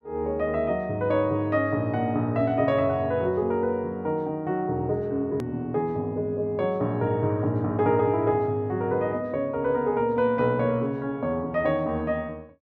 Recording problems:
hard cut with a click; at 5.5 s

